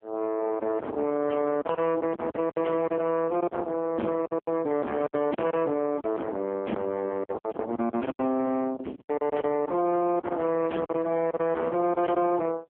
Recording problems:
phone line; 190 Hz to 3.3 kHz, AMR-NB
distorted audio; soft clipping, signal-to-distortion ratio 4 dB
lost packets; 10% of the sound replaced, filled with silence

